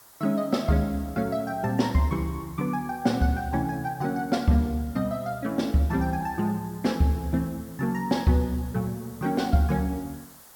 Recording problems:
background hiss; SNR 22 dB

